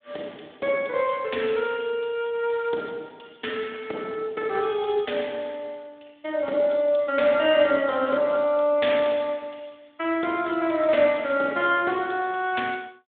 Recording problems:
phone line; 280 Hz to 3.6 kHz, Speex

